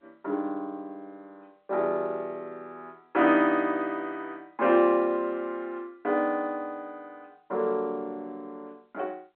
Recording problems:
phone line; 260 Hz to 3.6 kHz, G.711

